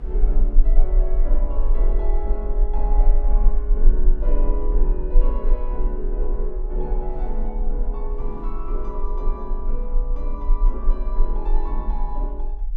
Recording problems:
low-frequency rumble; below 36 Hz, strongest tone 20 Hz, SNR -9 dB
wind noise; below 420 Hz, SNR 19 dB

